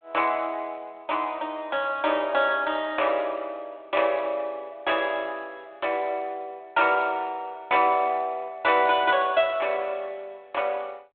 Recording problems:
telephone audio; 320 Hz to 3.6 kHz, G.726

